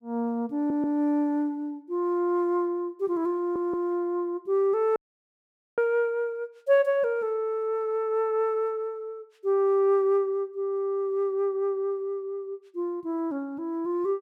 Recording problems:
stutter; at 0.5 s and at 3.5 s
dropout; at 5 s for 1 s

